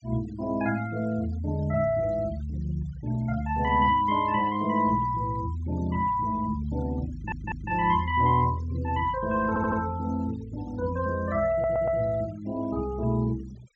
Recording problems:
treble missing; nothing above 8 kHz
denoising artefacts; signal-to-artefact ratio 23 dB
audio stuttering; at 7 s, at 9.5 s and at 12 s

